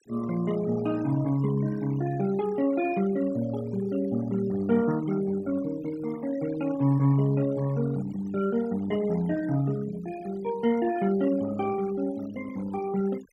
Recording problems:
denoising artefacts; signal-to-artefact ratio 17 dB

